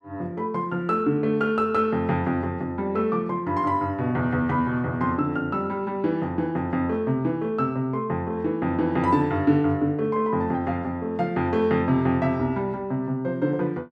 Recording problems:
none

